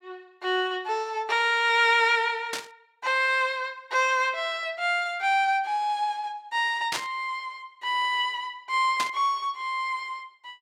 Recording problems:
burst of static; at 2.5 s, at 7 s and at 9 s; peak 0 dB vs average level

